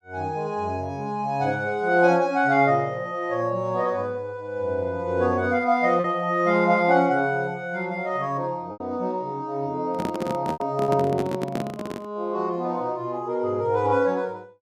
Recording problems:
lost packets; 1.7% of the sound replaced, filled with repeated pitch periods
handling noise; from 10 to 12 s; peak -1 dB vs average level

